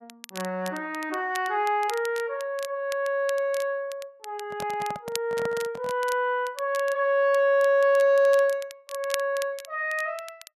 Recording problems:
crackle; vinyl, SNR 17 dB
microphone handling noise; from 4.5 to 6 s; peak -6 dB vs average level

